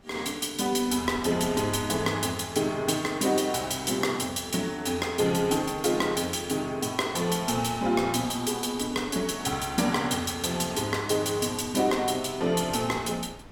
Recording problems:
wind noise; below 810 Hz, SNR 21 dB

